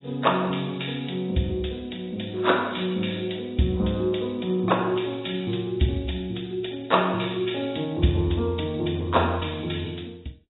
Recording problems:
lossy codec; AAC, log-spectral distance 8 dB, nothing above 3.8 kHz

